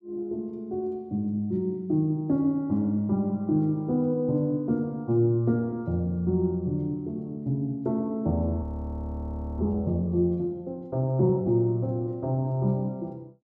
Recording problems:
audio freezing; at 8.5 s for 1 s

